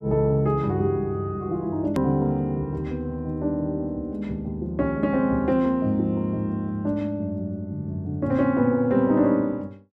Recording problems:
hard cut with a click; at 2 s

